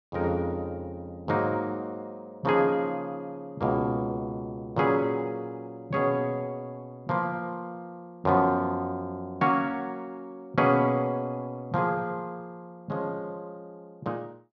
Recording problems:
none

